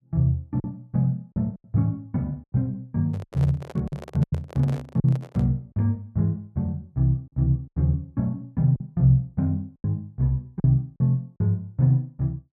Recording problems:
lost packets; 5% of the sound replaced, filled with silence
handling noise; from 3 to 5.5 s; peak -9 dB vs average level

